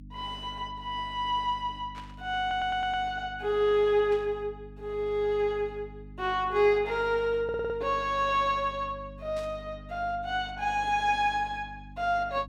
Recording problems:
hum; 50 Hz, harmonics up to 300 Hz, SNR 18 dB
static burst; at 2 s, at 4 s and at 9.5 s; peak -14 dB vs average level
audio stuttering; at 2.5 s and at 7.5 s

